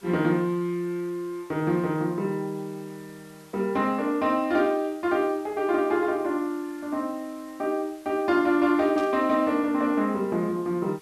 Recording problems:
background hiss; slope -1 dB per octave, SNR 27 dB
burst of static; at 9 s; peak -14 dB vs average level

